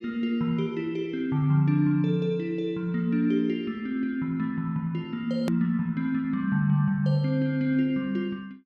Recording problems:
edit click; at 5.5 s

